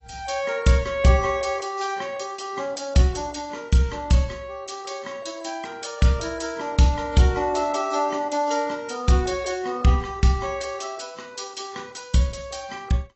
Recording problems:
codec artefacts; AAC, log-spectral distance 6 dB, nothing above 8 kHz

